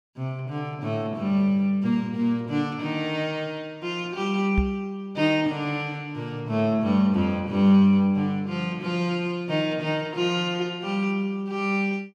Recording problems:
knock on the microphone; at 4.5 s; peak +4 dB vs average level

